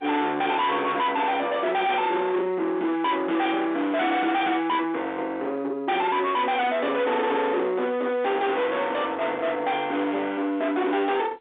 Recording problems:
phone line; 260 Hz to 3.7 kHz, G.711
distorted audio; soft clipping, signal-to-distortion ratio 7 dB

